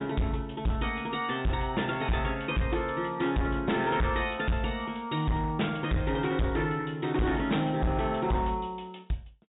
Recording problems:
treble cut off; nothing above 4 kHz
distortion; hard clipping, signal-to-distortion ratio 6 dB

